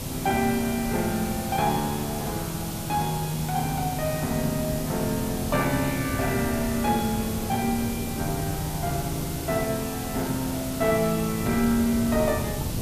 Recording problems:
hiss; SNR 8 dB
wind on the microphone; below 260 Hz, SNR 8 dB

